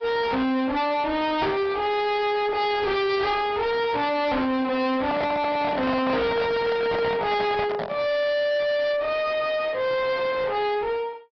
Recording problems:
treble missing; nothing above 5.3 kHz
lossy codec; AAC, log-spectral distance 2 dB
distorted audio; soft clipping, signal-to-distortion ratio 6 dB
microphone handling noise; from 5 to 8 s; peak +3 dB vs average level

